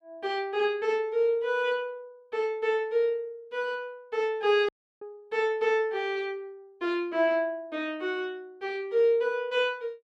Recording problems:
audio cutting out; at 4.5 s

